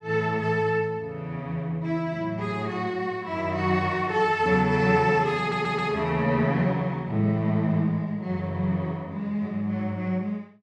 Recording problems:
audio stuttering; at 5.5 s

